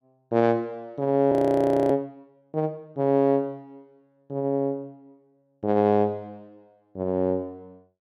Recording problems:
frozen audio; at 1.5 s for 0.5 s

